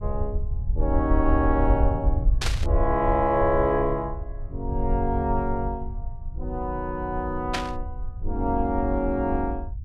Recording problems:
low-frequency rumble; below 72 Hz, SNR 4 dB
static burst; at 2.5 s and at 7.5 s; peak +3 dB vs average level

